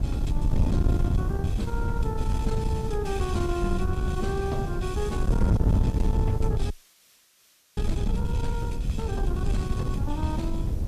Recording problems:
distortion; soft clipping, signal-to-distortion ratio 12 dB
background hiss; SNR 23 dB
wind on the microphone; below 120 Hz, SNR -4 dB
frozen audio; at 6.5 s for 1 s

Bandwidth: 14.5 kHz